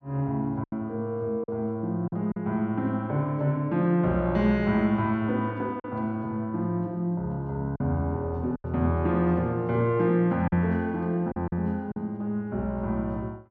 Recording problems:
packet loss; 4% of the sound replaced, filled with silence

